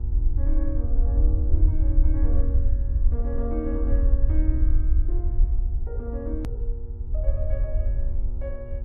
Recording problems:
hum; 60 Hz, harmonics up to 960 Hz, SNR 12 dB
low-frequency rumble; below 60 Hz, SNR -11 dB
click at an edit; at 6.5 s

